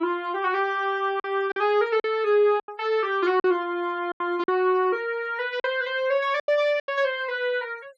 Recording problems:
noise reduction artefacts; signal-to-artefact ratio 26 dB
packet loss; 7% of the sound replaced, filled with silence

